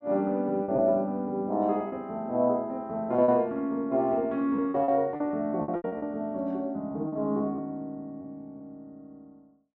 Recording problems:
lost packets; 8% of the sound replaced, filled with repeated pitch periods

